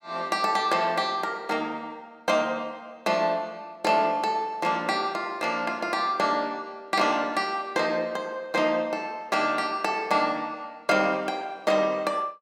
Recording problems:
none

